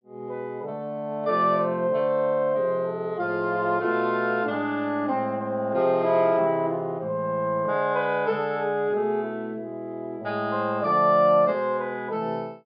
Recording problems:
low-pass filter; nothing above 5.5 kHz

